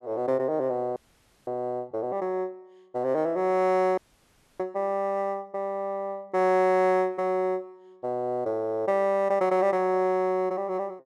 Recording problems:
audio freezing; at 1 s for 0.5 s and at 4 s for 0.5 s

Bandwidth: 12.5 kHz